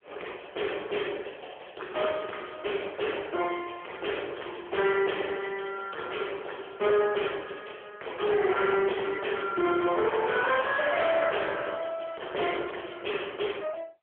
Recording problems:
phone line; 320 Hz to 3.4 kHz, AMR-NB
distorted audio; hard clipping, signal-to-distortion ratio 8 dB

